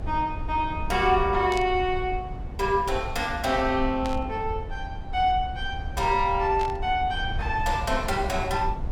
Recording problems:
low-frequency rumble; below 92 Hz, SNR 9 dB
static burst; at 1.5 s, at 4 s and at 6.5 s; peak -7 dB vs average level

